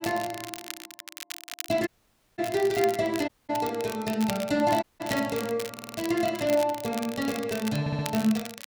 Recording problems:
crackling; vinyl, SNR 12 dB
audio cutting out; at 2 s for 0.5 s, at 3.5 s and at 5 s
audio stuttering; at 5.5 s and at 8 s

